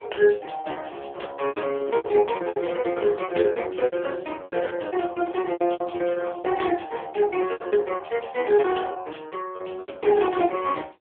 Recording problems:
phone line; 300 Hz to 3.5 kHz, AMR-NB
packet loss; 16% of the sound replaced, filled with repeated pitch periods

